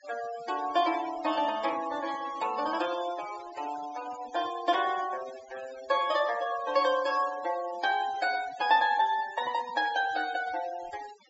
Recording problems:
low-pass filter; nothing above 8 kHz
denoising artefacts; signal-to-artefact ratio 15 dB

